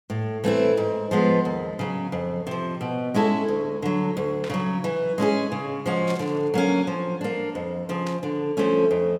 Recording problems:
burst of static; at 4.5 s, at 6 s and at 8 s; peak -9 dB vs average level

